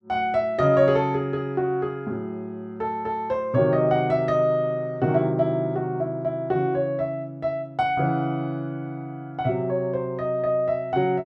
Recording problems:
none

